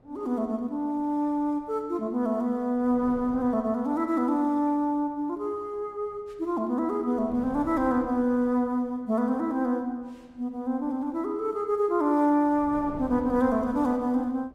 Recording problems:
wind noise; below 490 Hz, SNR 20 dB

